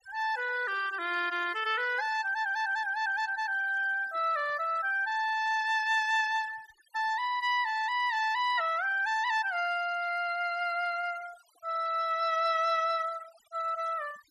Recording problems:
denoising artefacts; signal-to-artefact ratio 19 dB

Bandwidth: 13.5 kHz